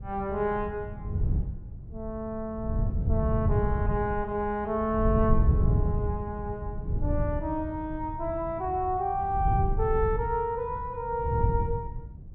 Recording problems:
wind noise; below 120 Hz, SNR 1 dB

